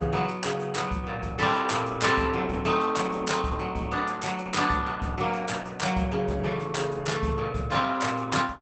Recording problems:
codec artefacts; Opus, log-spectral distance 5 dB, nothing above 8.2 kHz

